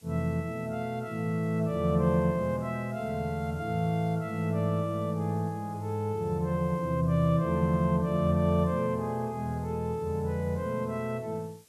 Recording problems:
background hiss; SNR 29 dB

